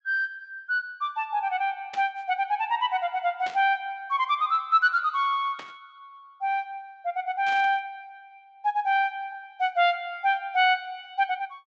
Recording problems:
treble missing; nothing above 8 kHz
burst of static; 4 times, first at 2 s; peak -9 dB vs average level

